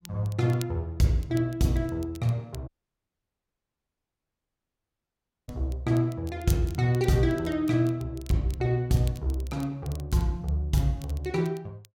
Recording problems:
crackle; vinyl, SNR 23 dB
audio cutting out; at 2.5 s for 3 s

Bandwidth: 16 kHz